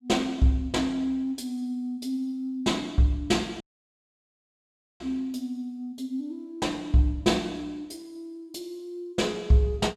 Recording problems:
audio cutting out; at 3.5 s for 1.5 s

